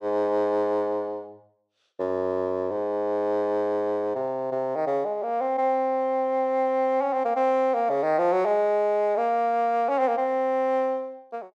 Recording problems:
none

